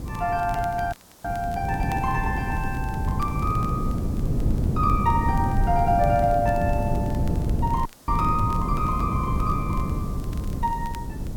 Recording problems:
background hiss; SNR 22 dB
wind noise; below 190 Hz, SNR 1 dB
crackling; vinyl, SNR 25 dB
dropout; at 1 s and at 8 s

